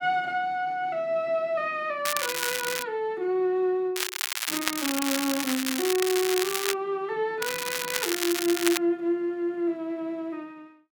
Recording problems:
crackling; at 2 s, from 4 to 6.5 s and from 7.5 to 9 s; loose cable, SNR 1 dB

